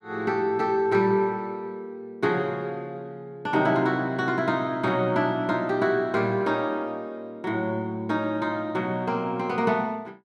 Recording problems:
none

